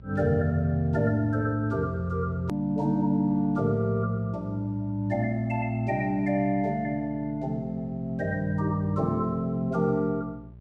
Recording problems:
hum; 60 Hz, harmonics up to 600 Hz, SNR 21 dB
hard cut with a click; at 2.5 s

